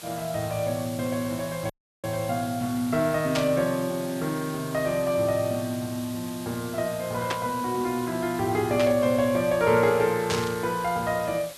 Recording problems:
background hiss; slope 0 dB per octave, SNR 15 dB
dropout; at 1.5 s
static burst; 4 times, first at 3.5 s; peak +1 dB vs average level

